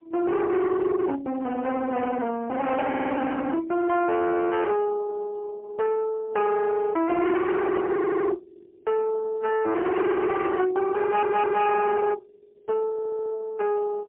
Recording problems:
telephone audio; 990 Hz to 2 kHz, AMR-NB, then MP3
distortion; hard clipping, signal-to-distortion ratio 7 dB
static burst; at 2 s and at 10 s; peak -15 dB vs average level
stutter; 4 times, first at 3 s

